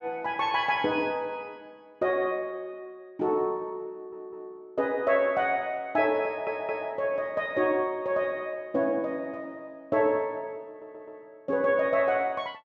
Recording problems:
stutter; at 4 s, at 6.5 s and at 11 s

